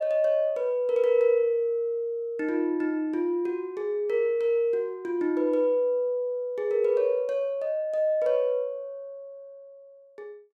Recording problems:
none

